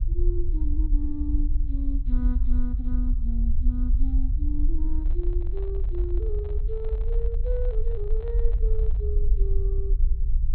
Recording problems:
low-pass filter; nothing above 4.3 kHz
low-frequency rumble; below 52 Hz, SNR -9 dB
handling noise; from 5 to 9 s; peak -9 dB vs average level

